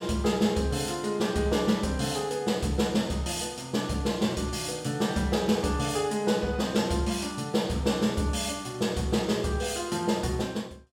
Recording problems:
none

